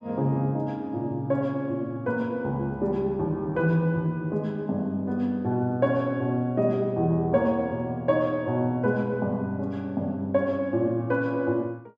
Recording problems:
none

